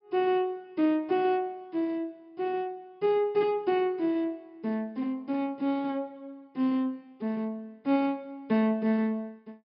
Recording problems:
treble missing; nothing above 5.5 kHz

